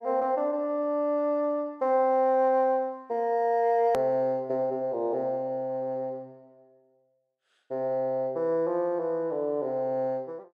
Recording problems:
hard cut with a click; at 4 s

